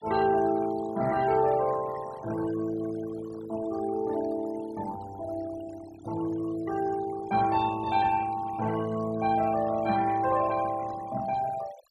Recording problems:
noise reduction artefacts; signal-to-artefact ratio 17 dB

